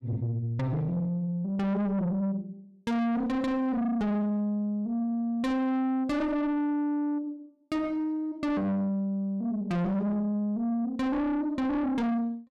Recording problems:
distortion; soft clipping, signal-to-distortion ratio 7 dB

